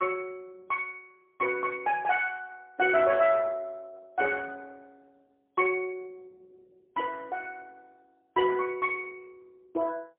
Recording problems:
phone line; 280 Hz to 3.3 kHz, AMR-NB, then MP3

